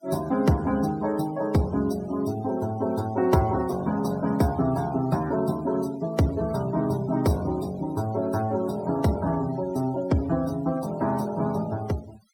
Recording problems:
denoising artefacts; signal-to-artefact ratio 20 dB

